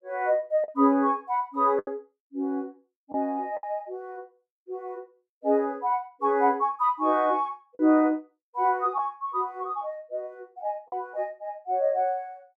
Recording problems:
lost packets; 3% of the sound replaced, filled with the last packet

